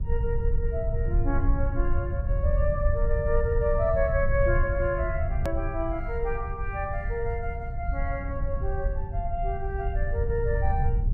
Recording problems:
low-frequency rumble; below 80 Hz, SNR -1 dB
click at an edit; at 5.5 s

